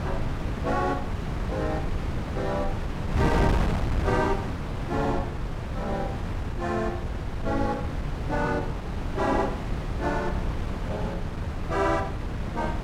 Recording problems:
wind on the microphone; below 280 Hz, SNR 1 dB

